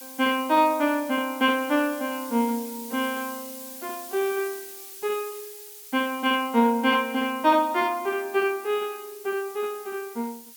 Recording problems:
hiss; slope +6 dB per octave, SNR 15 dB

